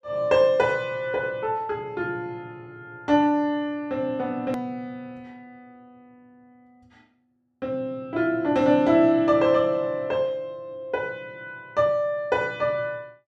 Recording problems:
hard cut with a click; at 4.5 s

